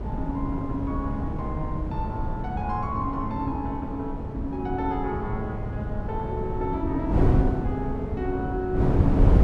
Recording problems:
wind noise; below 190 Hz, SNR -2 dB

